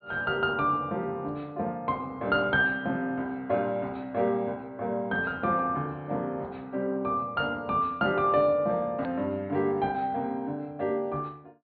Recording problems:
low-pass filter; nothing above 4.5 kHz
edit click; at 9 s

